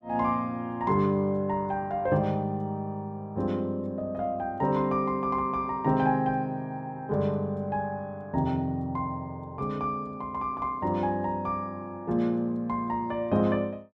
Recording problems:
none

